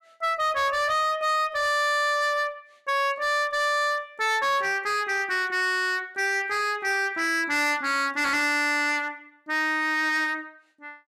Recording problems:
distortion; hard clipping, uneven, signal-to-distortion ratio 7 dB

